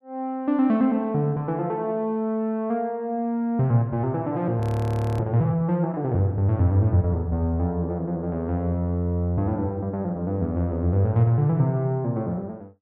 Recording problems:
audio freezing; at 4.5 s for 0.5 s

